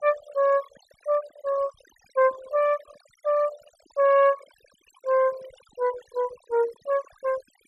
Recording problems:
noise reduction artefacts; signal-to-artefact ratio 18 dB

